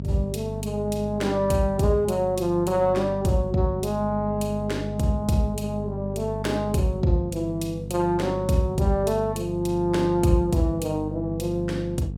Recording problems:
hum; 50 Hz, harmonics up to 500 Hz, SNR 8 dB

